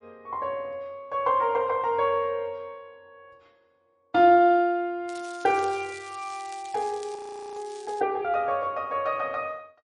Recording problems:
codec artefacts; MP3, log-spectral distance 2 dB
crackling; from 5 to 8 s; loose cable, SNR 21 dB
audio freezing; at 7 s

